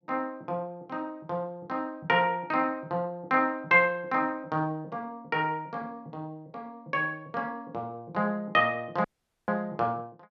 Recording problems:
dropout; at 9 s

